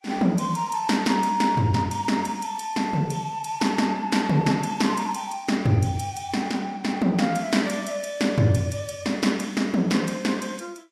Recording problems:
lossy codec; Vorbis, log-spectral distance 3 dB, nothing above 13.8 kHz

